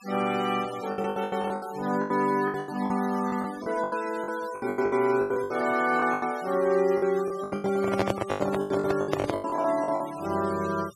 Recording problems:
noise reduction artefacts; signal-to-artefact ratio 17 dB
packet loss; 18% of the sound replaced, filled with the last packet
microphone handling noise; from 7.5 to 9.5 s; peak +4 dB vs average level

